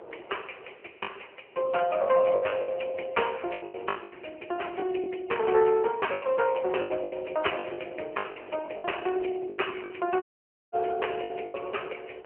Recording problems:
telephone audio; 320 Hz to 3 kHz, AMR-NB
wind on the microphone; below 710 Hz, SNR 19 dB
packet loss; 13% of the sound replaced, filled with the last packet
dropout; at 10 s for 0.5 s

